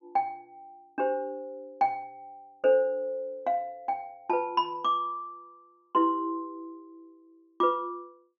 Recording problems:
low-pass filter; nothing above 6.7 kHz

